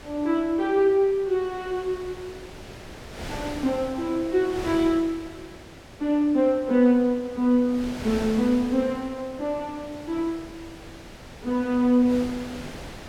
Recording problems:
wind on the microphone; below 2.1 kHz, SNR 16 dB

